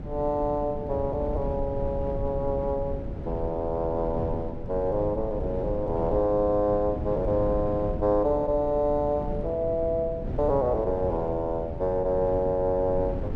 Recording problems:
wind noise; below 220 Hz, SNR 8 dB

